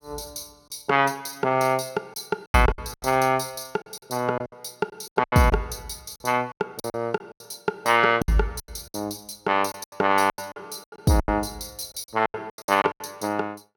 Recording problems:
lost packets; 14% of the sound replaced, filled with silence

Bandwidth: 17.5 kHz